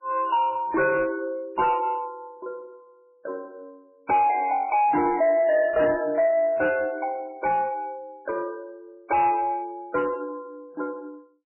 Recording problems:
lossy codec; MP3, log-spectral distance 2 dB, nothing above 2.5 kHz
distorted audio; soft clipping, signal-to-distortion ratio 10 dB

